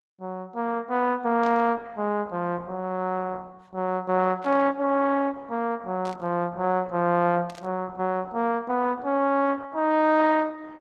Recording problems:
codec artefacts; Opus, log-spectral distance 2 dB
static burst; 4 times, first at 1.5 s; peak -14 dB vs average level

